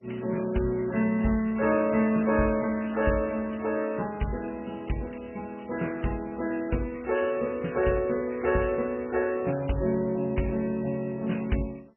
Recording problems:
lossy compression; MP3, then MP2, log-spectral distance 5 dB, nothing above 2.7 kHz

